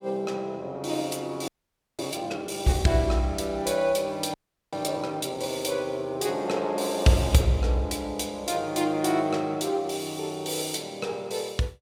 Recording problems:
audio freezing; at 1.5 s for 0.5 s and at 4.5 s

